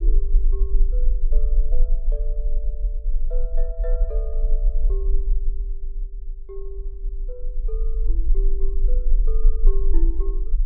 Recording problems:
treble cut off; nothing above 6.5 kHz
rumble; below 36 Hz, strongest tone 22 Hz, SNR -14 dB

